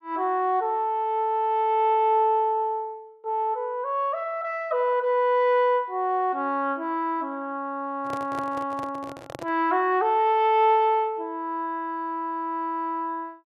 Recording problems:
microphone handling noise; from 8 to 9.5 s; peak -8 dB vs average level

